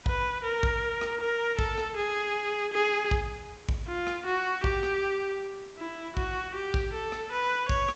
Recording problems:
treble cut off; nothing above 8 kHz
background hiss; slope -3 dB per octave, SNR 22 dB

